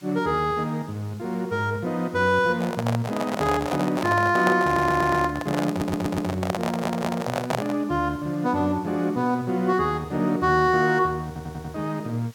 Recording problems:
background hiss; slope 0 dB per octave, SNR 27 dB
microphone handling noise; from 2.5 to 8 s; peak +3 dB vs average level
stutter; 4 times, first at 4.5 s

